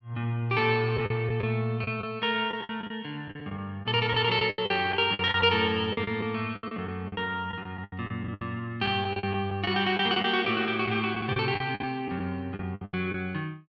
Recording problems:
packet loss; 13% of the sound replaced, filled with the last packet

